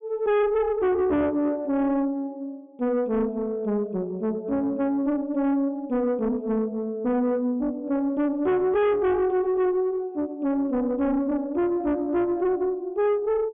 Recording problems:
low-pass filter; nothing above 3.5 kHz
distortion; soft clipping, signal-to-distortion ratio 7 dB

